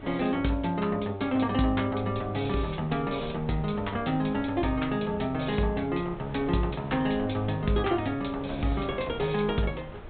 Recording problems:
treble cut off; nothing above 4 kHz
wind noise; below 590 Hz, SNR 15 dB

